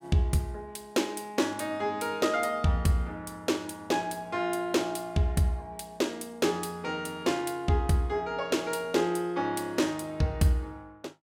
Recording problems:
none

